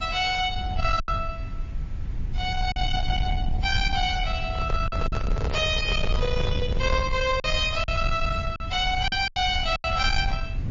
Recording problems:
lossy compression; MP3, then MP3, log-spectral distance 2 dB, nothing above 6.9 kHz
distortion; soft clipping, signal-to-distortion ratio 11 dB
hiss; SNR 25 dB
rumble; below 88 Hz, SNR 5 dB
lost packets; 5% of the sound replaced, filled with silence
microphone handling noise; from 4.5 to 7 s; peak -3 dB vs average level

